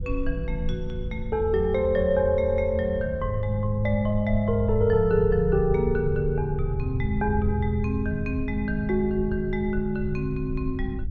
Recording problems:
rumble; below 80 Hz, SNR 9 dB

